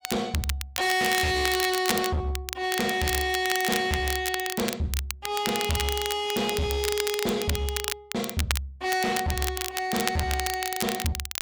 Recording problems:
distorted audio; hard clipping, uneven, signal-to-distortion ratio 8 dB
crackle; vinyl, SNR 5 dB

